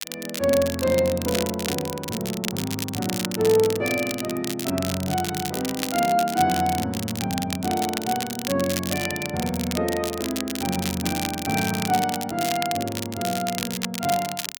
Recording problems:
crackling; vinyl, SNR 6 dB

